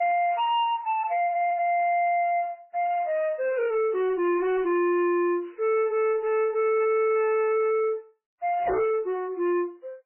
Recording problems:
lossy compression; MP3, then MP3, log-spectral distance 2 dB, nothing above 2.4 kHz
distortion; soft clipping, signal-to-distortion ratio 8 dB

